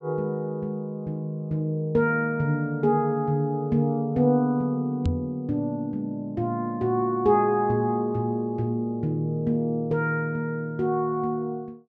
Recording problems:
knock on the microphone; at 5 s; peak +4 dB vs average level

